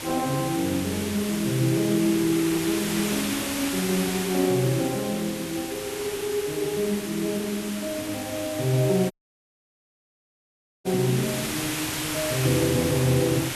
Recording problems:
hiss; slope -1 dB per octave, SNR 5 dB
audio cutting out; at 9 s for 1.5 s

